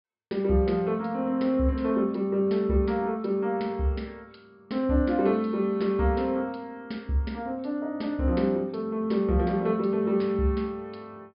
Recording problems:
low-pass filter; nothing above 5.1 kHz

